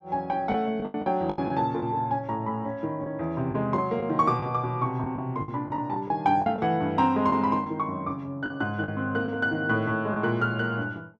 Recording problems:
lost packets; 7% of the sound replaced, filled with the last packet

